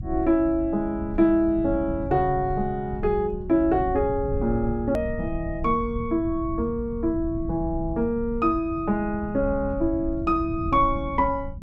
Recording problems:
low-frequency rumble; below 120 Hz, SNR 10 dB
edit click; at 5 s

